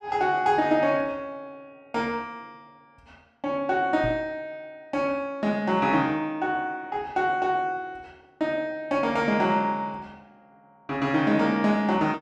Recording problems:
microphone thump; at 4 s; peak -5 dB vs average level

